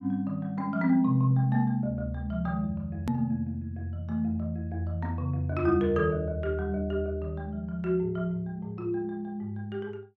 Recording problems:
hard cut with a click; at 3 s

